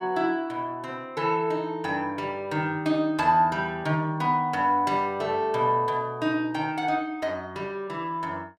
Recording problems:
none

